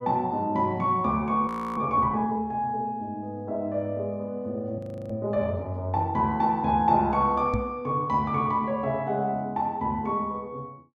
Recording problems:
audio freezing; at 1.5 s and at 5 s
microphone thump; at 7.5 s; peak +1 dB vs average level

